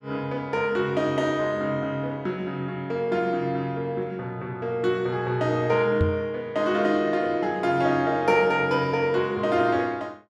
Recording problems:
microphone bump; at 6 s; peak +5 dB vs average level

